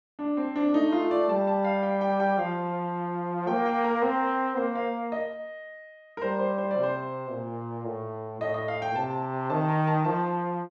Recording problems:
none

